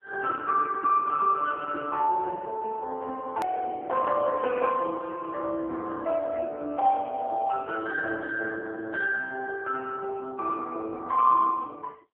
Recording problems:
telephone audio; 300 Hz to 2.6 kHz, AMR-NB
edit click; at 3.5 s

